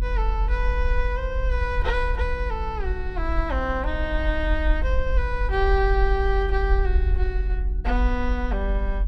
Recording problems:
electrical hum; 60 Hz, harmonics up to 360 Hz, SNR 10 dB
rumble; below 50 Hz, strongest tone 44 Hz, SNR -1 dB

